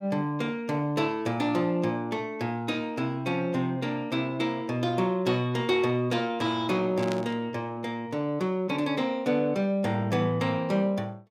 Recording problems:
static burst; at 7 s; peak -5 dB vs average level

